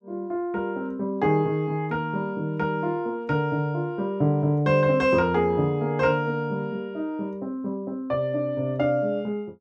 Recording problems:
none

